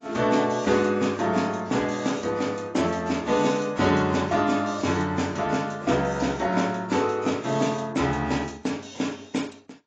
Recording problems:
lossy codec; AAC, log-spectral distance 6 dB, nothing above 7.3 kHz

